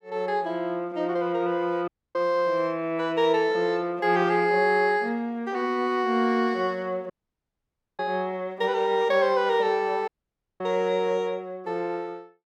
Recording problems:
audio cutting out; at 2 s, at 7 s for 1 s and at 10 s for 0.5 s

